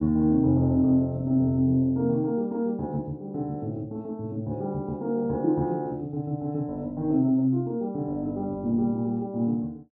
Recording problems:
none

